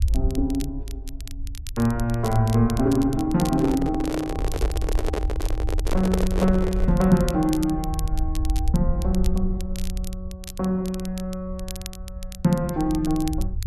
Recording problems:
low-frequency rumble; below 64 Hz, SNR 7 dB
crackling; vinyl, SNR 17 dB
handling noise; from 3.5 to 7 s; peak +1 dB vs average level

